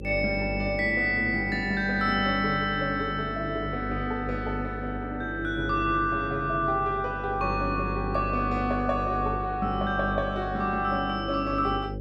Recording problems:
mains hum; 50 Hz, harmonics up to 550 Hz, SNR 9 dB

